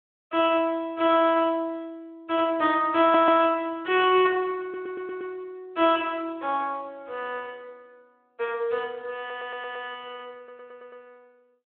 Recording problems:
phone line; 280 Hz to 3.6 kHz, Speex
audio stuttering; 4 times, first at 3 s

